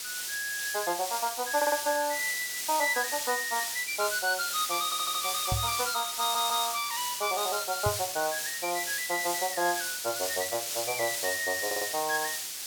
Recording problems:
background hiss; SNR 2 dB
audio stuttering; 4 times, first at 1.5 s
knock on the microphone; at 5.5 s and at 8 s; peak +2 dB vs average level

